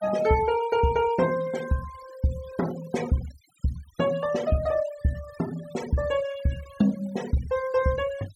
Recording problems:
denoising artefacts; signal-to-artefact ratio 18 dB

